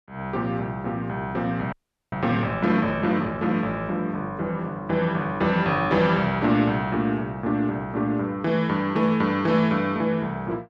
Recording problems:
frozen audio; at 1.5 s

